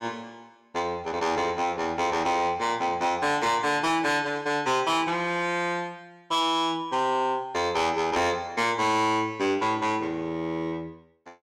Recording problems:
distorted audio; soft clipping, signal-to-distortion ratio 11 dB

